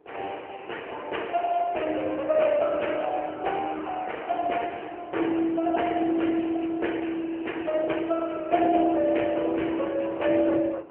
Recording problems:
telephone audio; 280 Hz to 3.1 kHz, AMR-NB
wind noise; below 660 Hz, SNR 21 dB

